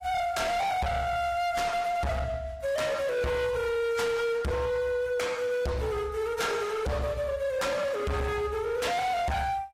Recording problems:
lossy compression; AAC, log-spectral distance 2 dB, nothing above 15.1 kHz
distortion; hard clipping, signal-to-distortion ratio 6 dB

